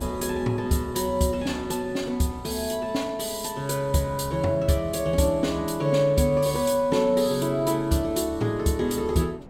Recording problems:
wind on the microphone; below 480 Hz, SNR 20 dB

